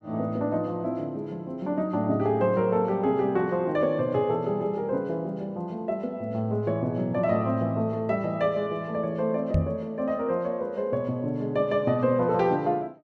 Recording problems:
knock on the microphone; at 9.5 s; peak +6 dB vs average level

